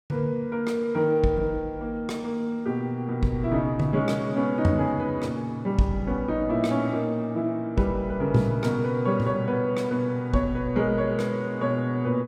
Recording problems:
none

